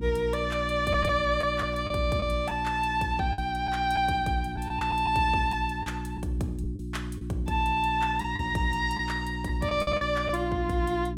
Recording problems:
hum; 60 Hz, harmonics up to 360 Hz, SNR 7 dB
lost packets; 5% of the sound replaced, filled with the last packet

